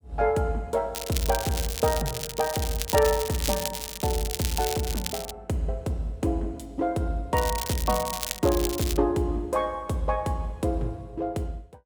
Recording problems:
crackling; from 1 to 5.5 s and from 7.5 to 9 s; loose cable, SNR 5 dB

